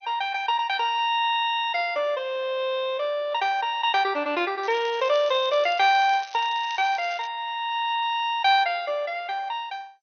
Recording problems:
codec artefacts; MP2, log-spectral distance 3 dB, nothing above 5.7 kHz
crackle; from 4.5 to 7.5 s; loose cable, SNR 21 dB

